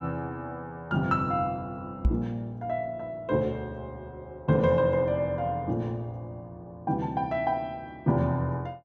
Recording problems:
knock on the microphone; at 2 s; peak +8 dB vs average level

